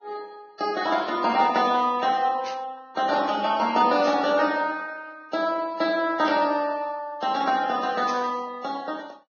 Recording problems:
codec artefacts; Vorbis, log-spectral distance 3 dB, nothing above 5.7 kHz
burst of static; at 2.5 s, at 4 s and at 8 s; peak -8 dB vs average level

